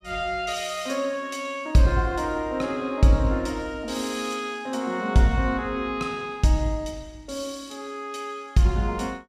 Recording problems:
none

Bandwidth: 15 kHz